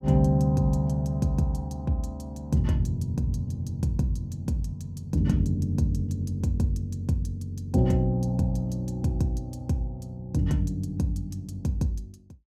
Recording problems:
none

